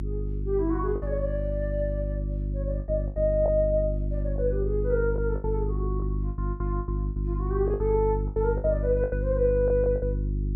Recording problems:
electrical hum; 50 Hz, harmonics up to 350 Hz, SNR 2 dB
lost packets; 11% of the sound replaced, filled with the last packet

